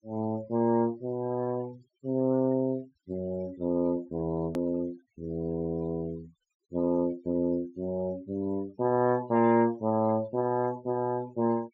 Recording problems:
treble cut off; nothing above 8 kHz
denoising artefacts; signal-to-artefact ratio 25 dB
edit click; at 4.5 s

